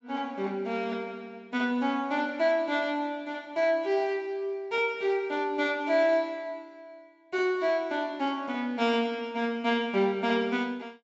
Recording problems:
low-pass filter; nothing above 8 kHz

